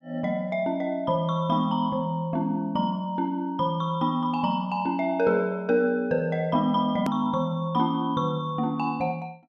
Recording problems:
edit click; at 7 s

